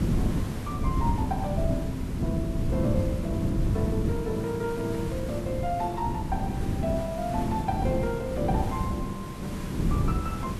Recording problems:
hiss; slope -5 dB per octave, SNR 9 dB
wind on the microphone; below 210 Hz, SNR -1 dB

